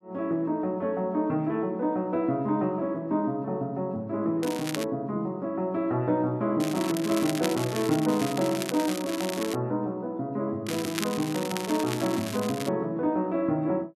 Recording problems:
crackle; at 4.5 s, from 6.5 to 9.5 s and from 11 to 13 s; loose cable, SNR 9 dB

